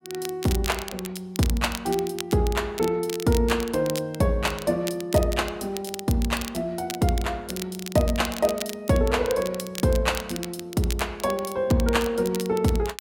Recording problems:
crackle; vinyl, SNR 12 dB

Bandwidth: 16.5 kHz